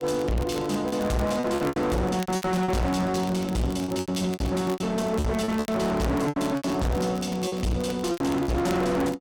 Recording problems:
distorted audio; hard clipping, uneven, signal-to-distortion ratio 5 dB
crackling; vinyl, SNR 19 dB
packet loss; 13% of the sound replaced, filled with repeated pitch periods

